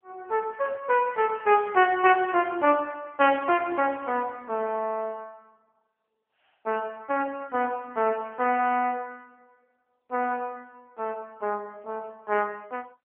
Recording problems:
telephone audio; 260 Hz to 3.3 kHz, AMR-NB

